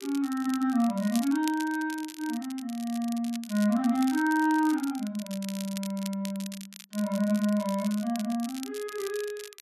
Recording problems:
crackling; vinyl, SNR 15 dB

